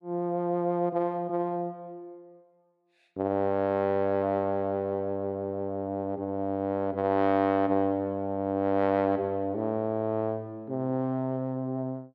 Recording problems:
none

